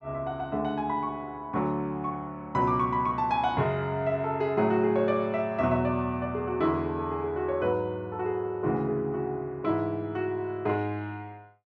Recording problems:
none

